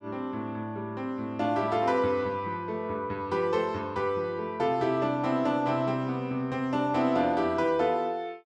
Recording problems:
none

